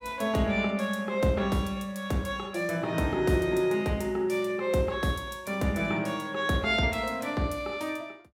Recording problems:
none

